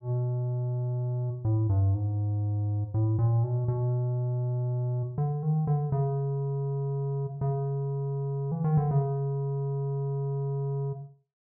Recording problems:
none

